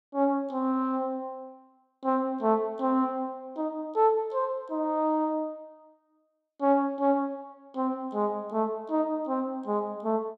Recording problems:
none

